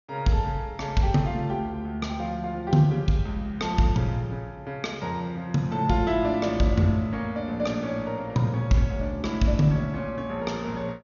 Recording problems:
treble cut off; nothing above 6.8 kHz

